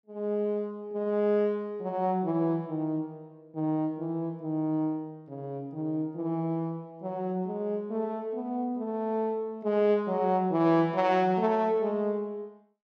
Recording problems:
none

